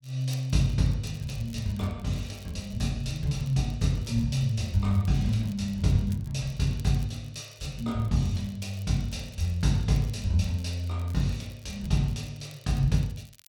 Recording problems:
crackle; vinyl, SNR 25 dB

